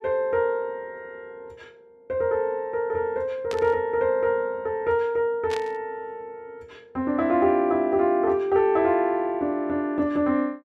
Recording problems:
static burst; at 3.5 s and at 5.5 s; peak -8 dB vs average level

